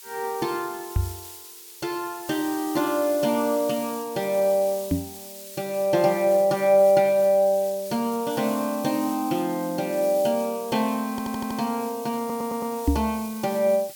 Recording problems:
hiss; slope +5 dB per octave, SNR 15 dB
microphone thump; at 1 s, at 5 s and at 13 s; peak +6 dB vs average level
audio stuttering; at 11 s and at 12 s

